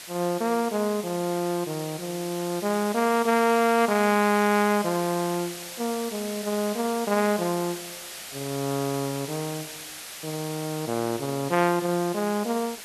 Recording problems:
background hiss; slope +1 dB per octave, SNR 11 dB

